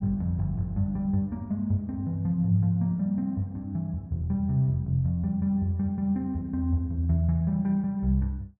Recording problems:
none

